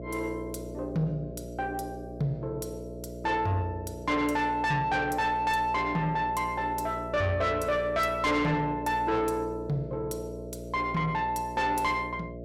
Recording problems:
distortion; soft clipping, signal-to-distortion ratio 11 dB
electrical hum; 60 Hz, harmonics up to 660 Hz, SNR 11 dB

